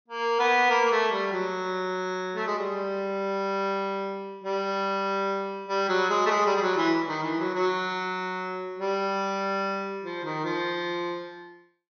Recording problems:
low-pass filter; nothing above 6.4 kHz

